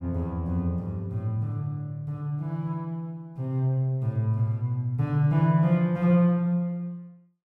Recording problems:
none

